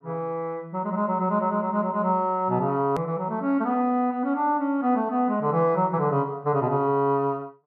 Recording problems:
edit click; at 3 s

